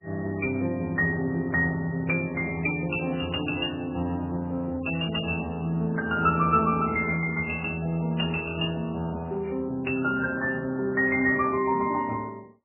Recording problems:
lossy compression; MP3, then MP3, log-spectral distance 2 dB, nothing above 2.8 kHz

